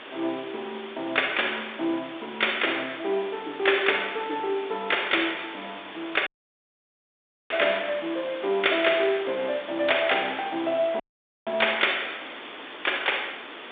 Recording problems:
phone line; 240 Hz to 3.6 kHz, G.726
background hiss; SNR 13 dB
dropout; at 6.5 s for 1 s and at 11 s

